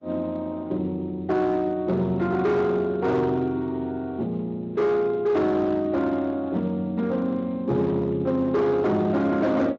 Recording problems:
lossy codec; Opus, then Speex, log-spectral distance 2 dB, nothing above 7.3 kHz
distortion; hard clipping, signal-to-distortion ratio 11 dB

